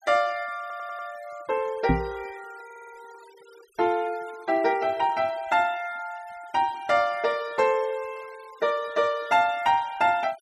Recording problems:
noise reduction artefacts; signal-to-artefact ratio 24 dB
stutter; at 0.5 s and at 2.5 s
microphone bump; at 2 s; peak +6 dB vs average level

